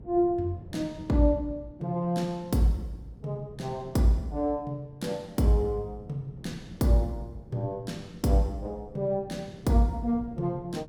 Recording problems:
wind on the microphone; below 240 Hz, SNR 19 dB

